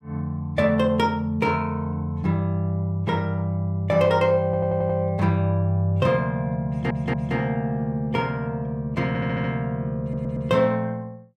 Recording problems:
stutter; 4 times, first at 4.5 s

